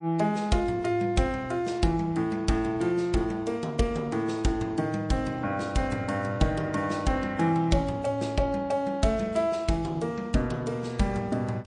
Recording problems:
lossy compression; MP3, log-spectral distance 2 dB, nothing above 8.7 kHz

